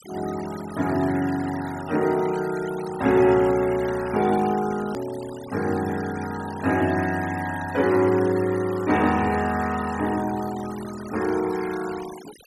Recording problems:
denoising artefacts; signal-to-artefact ratio 16 dB
edit click; at 5 s

